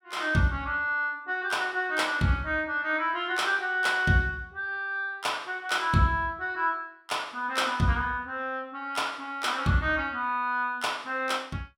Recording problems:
none

